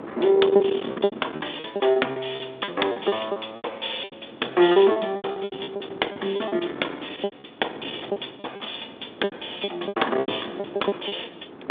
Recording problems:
telephone audio; 280 Hz to 3.6 kHz, G.726
distorted audio; soft clipping, signal-to-distortion ratio 14 dB
wind noise; below 610 Hz, SNR 9 dB
packet loss; 17% of the sound replaced, filled with repeated pitch periods

